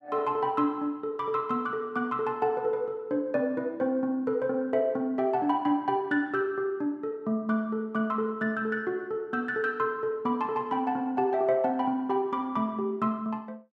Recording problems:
none

